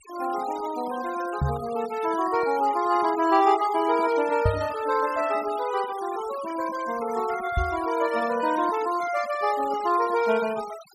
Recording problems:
noise reduction artefacts; signal-to-artefact ratio 16 dB
knock on the microphone; at 1.5 s, at 4.5 s and at 7.5 s; peak +4 dB vs average level

